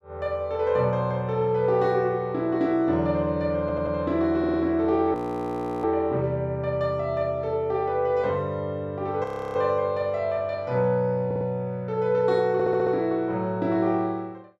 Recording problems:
audio stuttering; 4 times, first at 3.5 s
frozen audio; at 5 s for 0.5 s and at 9 s

